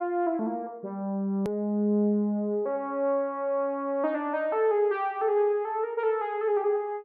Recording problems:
click at an edit; at 1.5 s

